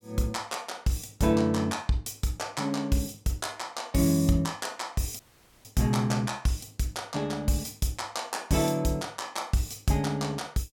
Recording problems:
dropout; at 5 s

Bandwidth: 17.5 kHz